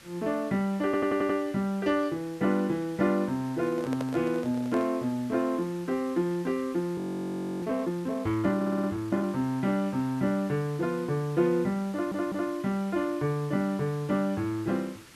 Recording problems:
background hiss; SNR 21 dB
stutter; at 1 s, at 8.5 s and at 12 s
microphone handling noise; from 3.5 to 5 s; peak -4 dB vs average level
audio freezing; at 7 s for 0.5 s

